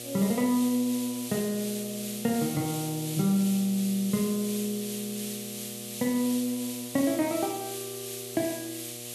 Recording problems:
hum; 60 Hz, harmonics up to 1.3 kHz, SNR 16 dB
background hiss; SNR 8 dB

